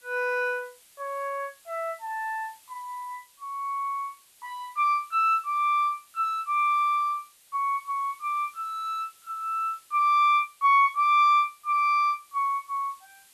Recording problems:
hiss; slope +2 dB per octave, SNR 28 dB

